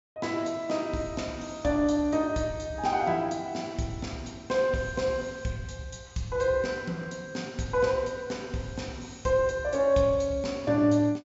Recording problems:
treble missing; nothing above 8 kHz

